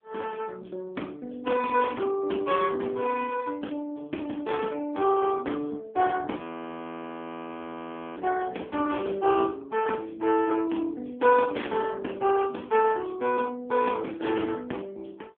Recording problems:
telephone audio; 220 Hz to 3.3 kHz, AMR-NB
audio freezing; at 6.5 s for 2 s

